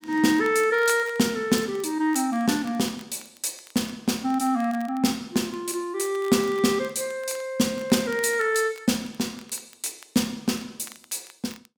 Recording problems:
crackle; vinyl, SNR 24 dB

